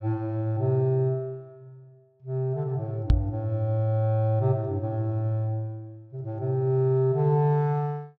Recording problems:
microphone thump; at 3 s; peak +8 dB vs average level

